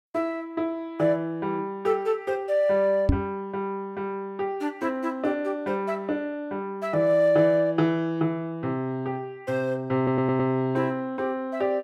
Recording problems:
knock on the microphone; at 3 s; peak +8 dB vs average level
stutter; at 10 s

